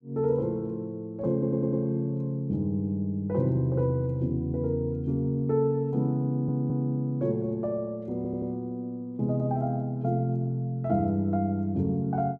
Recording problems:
stutter; at 1.5 s, at 6.5 s and at 8 s

